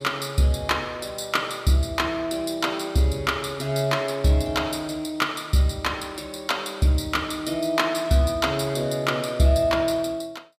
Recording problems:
none

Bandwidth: 15 kHz